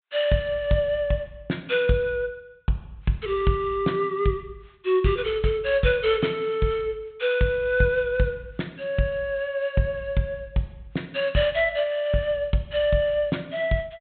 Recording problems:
treble missing; nothing above 4 kHz

